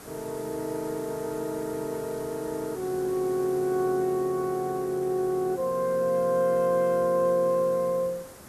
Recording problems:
hiss; SNR 18 dB

